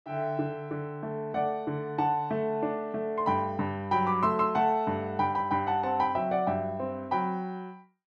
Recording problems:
none

